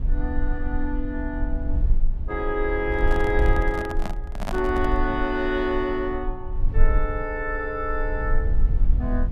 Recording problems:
low-frequency rumble; below 50 Hz, strongest tone 20 Hz, SNR 1 dB
microphone handling noise; from 3 to 5 s; peak +1 dB vs average level

